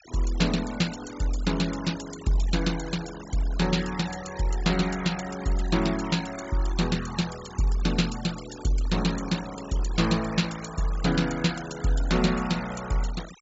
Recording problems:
treble missing; nothing above 8 kHz
denoising artefacts; signal-to-artefact ratio 14 dB

